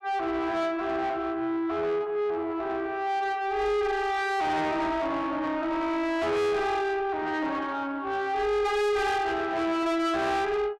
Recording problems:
distortion; soft clipping, signal-to-distortion ratio 7 dB

